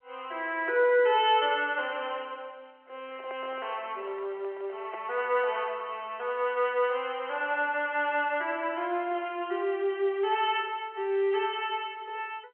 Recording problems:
phone line; 300 Hz to 3.2 kHz, G.711
handling noise; from 3 to 5 s; peak -10 dB vs average level

